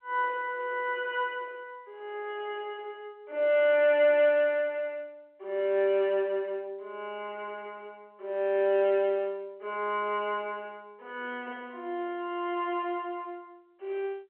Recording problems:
telephone audio; 300 Hz to 3.2 kHz, G.711

